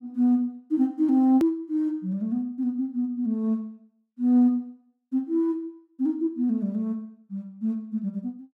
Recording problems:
hard cut with a click; at 1.5 s

